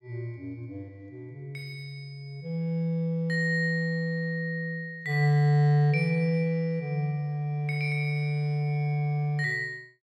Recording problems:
none

